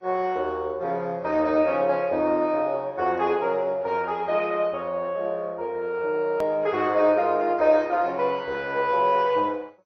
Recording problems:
lossy compression; MP2, then AAC, log-spectral distance 2 dB
edit click; at 6.5 s

